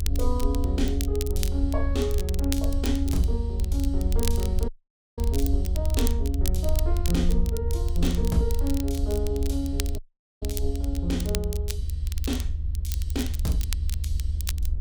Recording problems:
low-frequency rumble; below 76 Hz, SNR -3 dB
crackle; vinyl, SNR 8 dB
dropout; at 4.5 s and at 10 s

